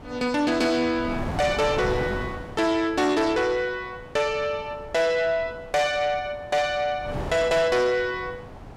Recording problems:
distorted audio; soft clipping, signal-to-distortion ratio 12 dB
wind noise; below 770 Hz, SNR 12 dB

